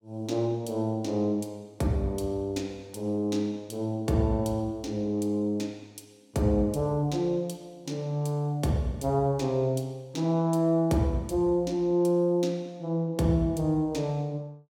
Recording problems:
none

